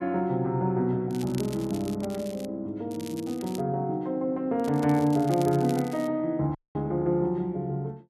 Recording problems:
crackle; from 1 to 2.5 s, at 3 s and from 4.5 to 6 s; loose cable, SNR 19 dB
dropout; at 6.5 s

